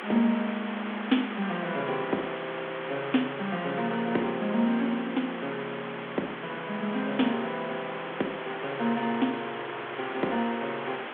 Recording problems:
telephone audio; 170 Hz to 3.4 kHz, G.726
hiss; SNR 7 dB

